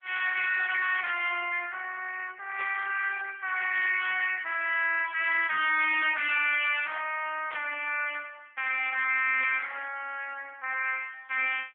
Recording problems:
phone line; 540 Hz to 3.1 kHz, AMR-NB
distortion; hard clipping, uneven, signal-to-distortion ratio 9 dB
burst of static; 4 times, first at 2.5 s; peak -6 dB vs average level

